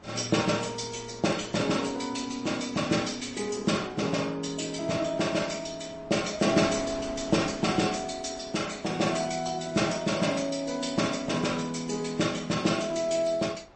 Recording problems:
codec artefacts; MP3, log-spectral distance 6 dB, nothing above 8.2 kHz
wind on the microphone; below 1.3 kHz, SNR 21 dB

